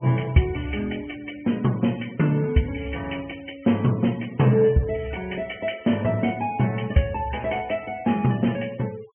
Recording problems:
treble missing; nothing above 3.1 kHz
denoising artefacts; signal-to-artefact ratio 23 dB

